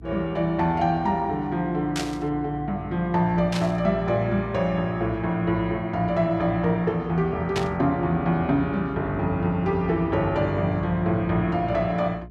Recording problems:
electrical hum; 60 Hz, harmonics up to 420 Hz, SNR 18 dB
static burst; at 2 s, at 3.5 s and at 7.5 s; peak -1 dB vs average level

